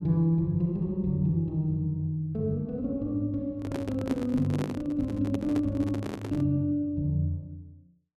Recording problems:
microphone handling noise; from 3.5 to 6.5 s; peak -3 dB vs average level

